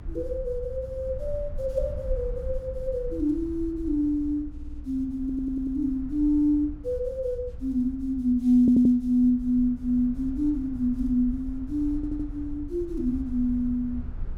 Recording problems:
rumble; below 66 Hz, SNR 13 dB
stutter; 4 times, first at 4.5 s

